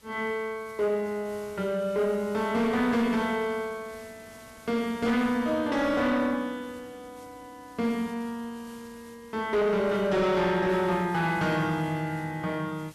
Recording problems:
distorted audio; soft clipping, signal-to-distortion ratio 11 dB
background hiss; slope -2 dB per octave, SNR 25 dB

